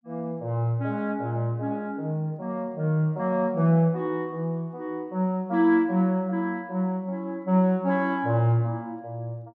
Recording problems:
none

